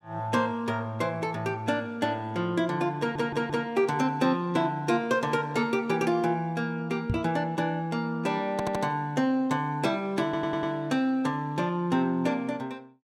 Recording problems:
stutter; at 3 s, at 8.5 s and at 10 s
microphone thump; at 7 s; peak +3 dB vs average level

